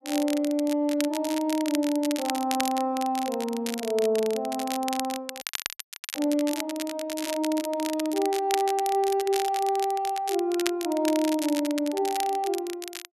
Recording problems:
crackle; vinyl, SNR 9 dB
frozen audio; at 5.5 s for 0.5 s

